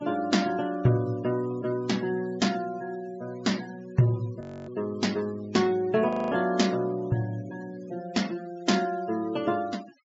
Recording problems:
treble cut off; nothing above 8 kHz
noise reduction artefacts; signal-to-artefact ratio 19 dB
frozen audio; at 4.5 s and at 6 s

